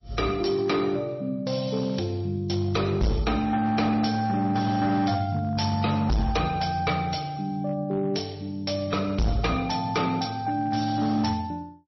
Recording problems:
lossy compression; MP3, log-spectral distance 5 dB, nothing above 5.7 kHz
distortion; hard clipping, signal-to-distortion ratio 6 dB

